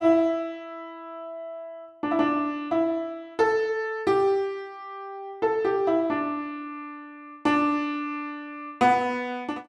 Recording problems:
none

